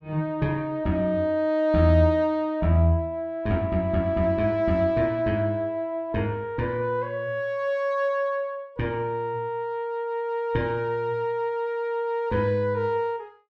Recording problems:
none

